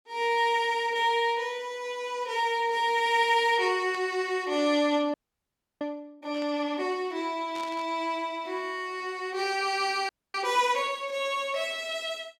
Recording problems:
burst of static; at 4 s, at 6.5 s and at 7.5 s; peak -13 dB vs average level
audio freezing; at 5 s for 0.5 s and at 10 s

